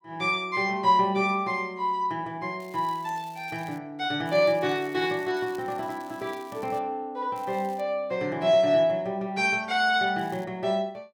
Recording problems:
crackling; 4 times, first at 2.5 s; loose cable, SNR 27 dB

